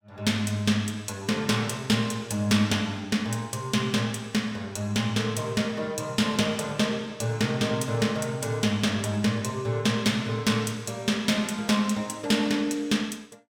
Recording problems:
none

